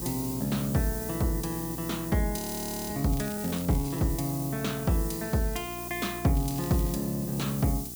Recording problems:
electrical hum; 60 Hz, harmonics up to 1.2 kHz, SNR 13 dB
hiss; SNR 8 dB
frozen audio; at 2.5 s for 0.5 s
crackle; at 3 s and at 6.5 s; loose cable, SNR 18 dB

